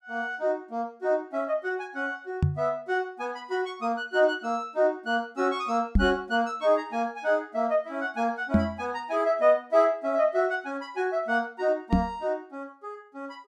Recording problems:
microphone bump; 4 times, first at 2.5 s; peak +9 dB vs average level

